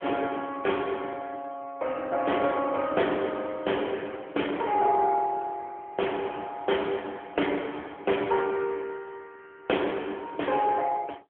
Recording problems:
telephone audio; 260 Hz to 3.3 kHz, AMR-NB

